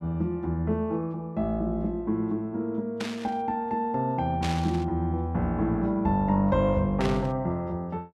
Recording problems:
static burst; at 3 s, at 4.5 s and at 7 s; peak -3 dB vs average level

